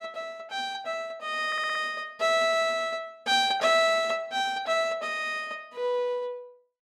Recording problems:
audio stuttering; at 1.5 s

